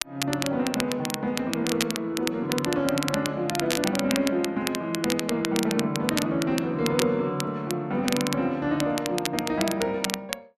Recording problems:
crackling; vinyl, SNR 5 dB

